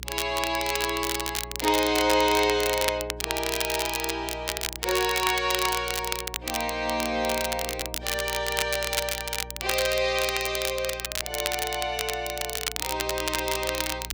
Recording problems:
mains hum; 60 Hz, harmonics up to 420 Hz, SNR 16 dB
crackle; vinyl, SNR 3 dB

